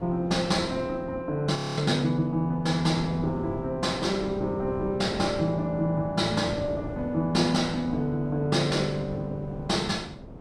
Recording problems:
wind on the microphone; below 400 Hz, SNR 12 dB
audio freezing; at 1.5 s

